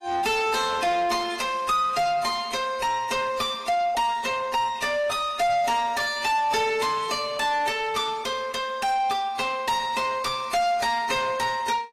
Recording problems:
codec artefacts; AAC, log-spectral distance 3 dB
distortion; soft clipping, signal-to-distortion ratio 6 dB

